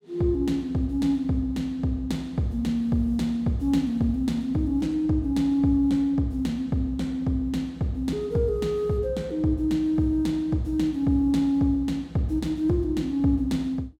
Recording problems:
none

